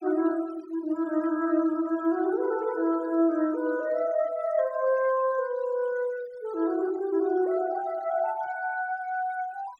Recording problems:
noise reduction artefacts; signal-to-artefact ratio 21 dB

